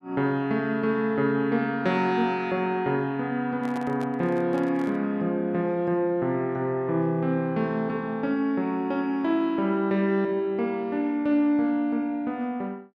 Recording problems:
handling noise; from 3.5 to 5 s; peak -9 dB vs average level

